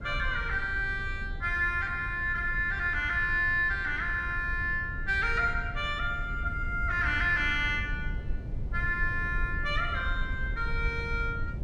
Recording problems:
low-frequency rumble; below 84 Hz, SNR 8 dB

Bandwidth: 13 kHz